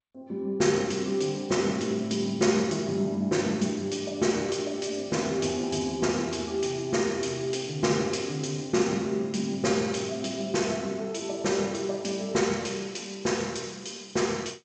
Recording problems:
lossy codec; G.722, log-spectral distance 5 dB, nothing above 7.3 kHz

